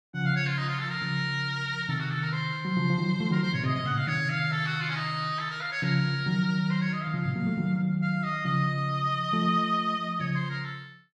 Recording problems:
none

